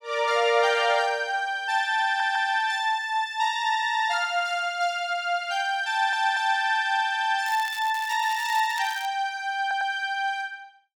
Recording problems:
audio stuttering; at 2 s, at 6 s and at 9.5 s
crackling; from 7.5 to 9 s; loose cable, SNR 17 dB

